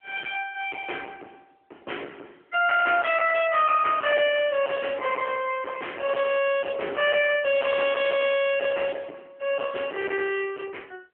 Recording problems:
telephone audio; 300 Hz to 3.1 kHz, AMR-NB
distorted audio; hard clipping, uneven, signal-to-distortion ratio 5 dB

